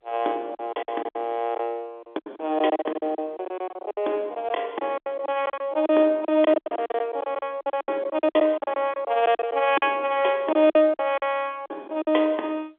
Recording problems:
phone line; 280 Hz to 3.6 kHz, G.711
lost packets; 17% of the sound replaced, filled with silence

